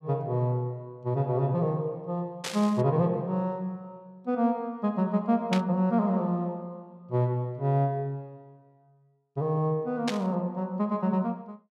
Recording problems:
burst of static; at 2.5 s, at 5.5 s and at 10 s; peak +1 dB vs average level

